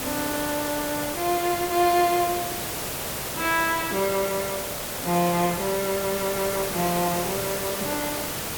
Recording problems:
background hiss; slope -3 dB per octave, SNR 3 dB
crackle; vinyl, SNR 27 dB

